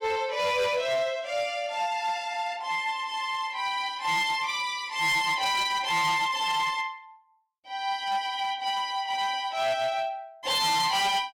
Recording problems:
distortion; hard clipping, uneven, signal-to-distortion ratio 11 dB

